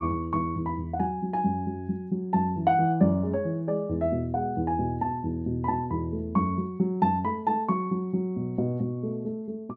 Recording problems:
none

